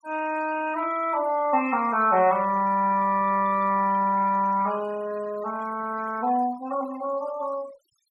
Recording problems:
noise reduction artefacts; signal-to-artefact ratio 20 dB

